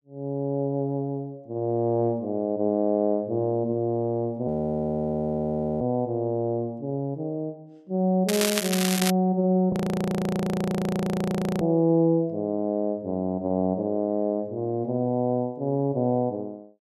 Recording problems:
audio freezing; at 4.5 s for 1.5 s and at 9.5 s for 2 s
crackling; at 8.5 s; loose cable, SNR 2 dB

